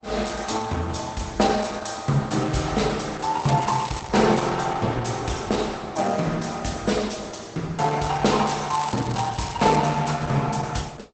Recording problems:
codec artefacts; Opus, log-spectral distance 7 dB, nothing above 8 kHz
crackling; at 3.5 s and from 9 to 10 s; loose cable, SNR 15 dB

